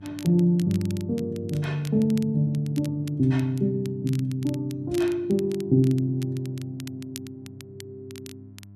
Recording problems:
electrical hum; 50 Hz, harmonics up to 400 Hz, SNR 23 dB
crackle; vinyl, SNR 21 dB

